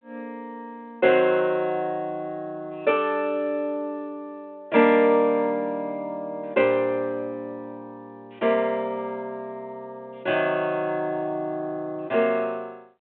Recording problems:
phone line; 260 Hz to 3.9 kHz, G.726

